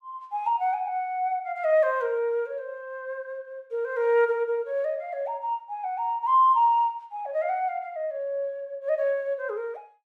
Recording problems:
none

